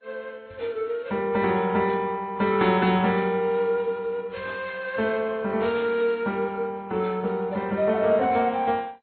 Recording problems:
codec artefacts; MP2, then AAC, log-spectral distance 2 dB, nothing above 4.1 kHz

